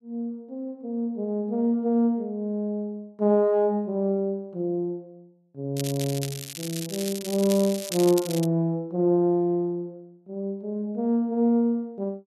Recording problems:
crackle; from 6 to 8.5 s; loose cable, SNR 9 dB

